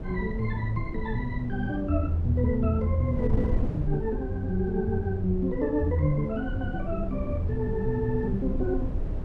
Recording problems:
wind on the microphone; below 120 Hz, SNR 6 dB

